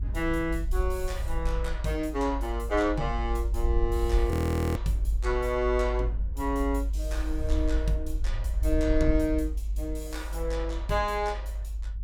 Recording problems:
rumble; below 56 Hz, strongest tone 50 Hz, SNR 1 dB
audio freezing; at 4.5 s

